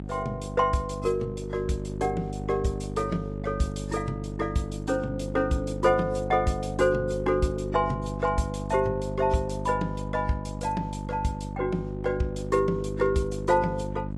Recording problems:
codec artefacts; AAC, log-spectral distance 2 dB, nothing above 11.3 kHz
hum; 50 Hz, harmonics up to 650 Hz, SNR 7 dB

